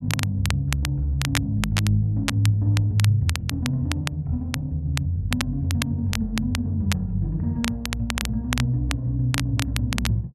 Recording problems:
crackle; vinyl, SNR 8 dB

